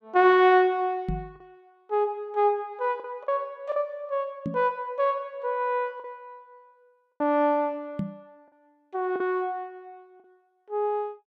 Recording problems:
lost packets; 3% of the sound replaced, filled with the last packet
knock on the microphone; at 1 s, at 4.5 s and at 8 s; peak -1 dB vs average level

